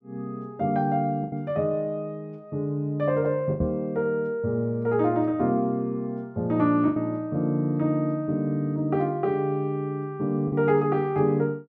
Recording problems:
packet loss; 2% of the sound replaced, filled with the last packet
microphone thump; at 3.5 s; peak +1 dB vs average level

